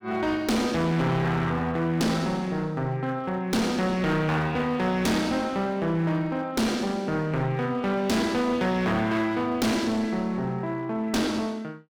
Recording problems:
distortion; hard clipping, uneven, signal-to-distortion ratio 7 dB

